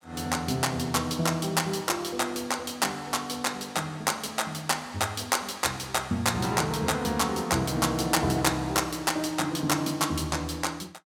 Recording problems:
none

